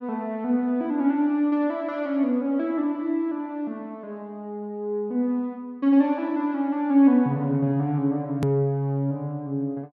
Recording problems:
click at an edit; at 8.5 s

